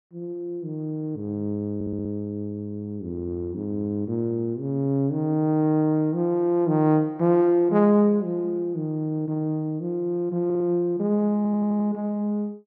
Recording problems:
audio stuttering; at 2 s, at 10 s and at 11 s

